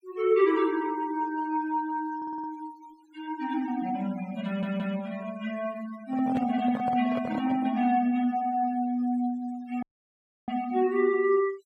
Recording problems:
noise reduction artefacts; signal-to-artefact ratio 20 dB
audio stuttering; at 2 s and at 4.5 s
microphone handling noise; from 6 to 7.5 s; peak -3 dB vs average level
audio cutting out; at 10 s for 0.5 s

